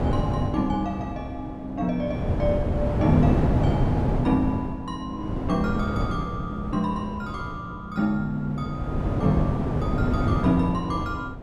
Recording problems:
hum; 60 Hz, harmonics up to 360 Hz, SNR 19 dB
wind on the microphone; below 330 Hz, SNR 0 dB

